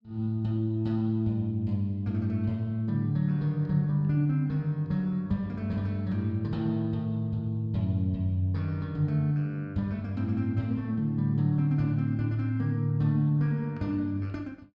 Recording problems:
none

